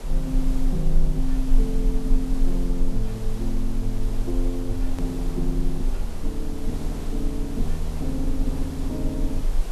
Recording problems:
background hiss; slope -5 dB per octave, SNR 9 dB
rumble; below 32 Hz, strongest tone 22 Hz, SNR -1 dB
click at an edit; at 5 s

